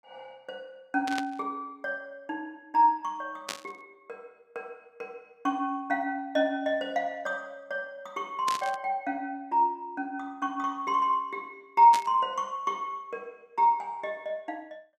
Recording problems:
static burst; 4 times, first at 1 s; peak 0 dB vs average level

